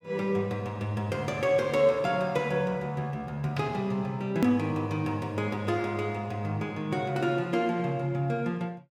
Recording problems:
hard cut with a click; at 4.5 s

